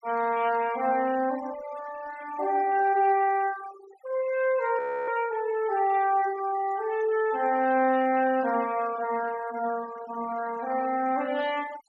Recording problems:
noise reduction artefacts; signal-to-artefact ratio 18 dB
frozen audio; at 5 s

